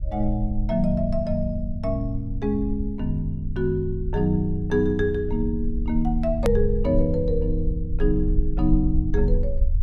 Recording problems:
rumble; below 52 Hz, SNR 5 dB
edit click; at 6.5 s

